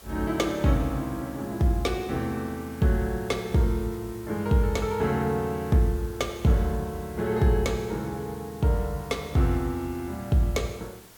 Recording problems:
hiss; slope -3 dB per octave, SNR 21 dB

